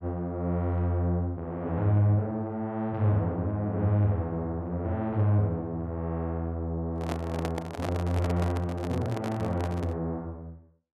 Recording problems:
microphone handling noise; from 7 to 10 s; peak 0 dB vs average level

